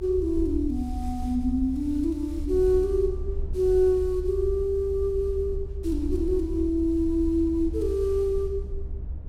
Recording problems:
rumble; below 70 Hz, SNR 8 dB

